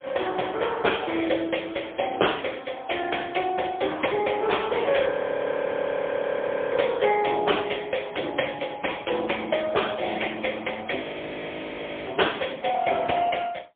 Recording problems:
telephone audio; 280 Hz to 3.4 kHz, AMR-NB, then MP3
audio freezing; at 5 s for 1.5 s and at 11 s for 1 s

